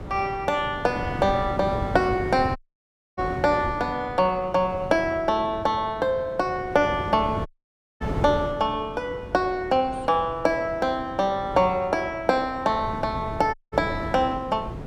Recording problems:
wind on the microphone; below 390 Hz, SNR 11 dB
audio cutting out; at 2.5 s for 0.5 s, at 7.5 s for 0.5 s and at 14 s

